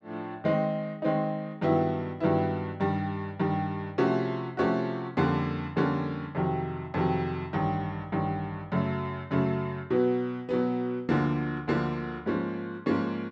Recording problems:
none

